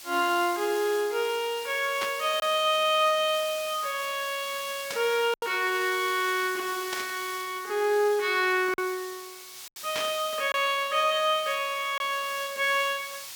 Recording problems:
hiss; slope +3 dB per octave, SNR 13 dB
packet loss; 1.4% of the sound replaced, filled with silence
burst of static; 4 times, first at 2 s; peak -3 dB vs average level

